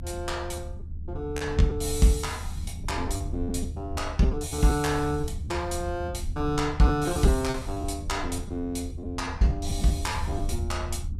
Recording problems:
rumble; below 88 Hz, SNR 7 dB
packet loss; 7% of the sound replaced, filled with repeated pitch periods

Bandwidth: 15 kHz